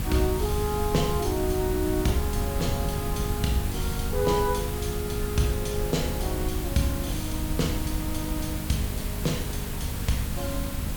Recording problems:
hum; 50 Hz, harmonics up to 850 Hz, SNR 7 dB
background hiss; slope -3 dB per octave, SNR 6 dB
rumble; below 92 Hz, SNR 4 dB

